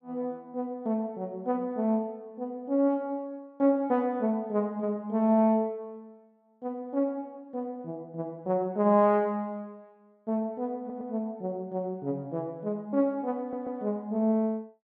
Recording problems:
stutter; at 11 s and at 13 s

